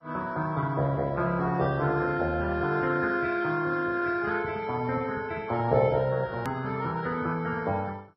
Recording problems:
codec artefacts; Vorbis, then MP2, log-spectral distance 3 dB, nothing above 15.6 kHz
hard cut with a click; at 6.5 s

